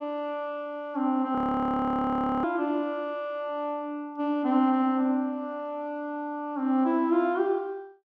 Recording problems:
audio freezing; at 1.5 s for 1 s

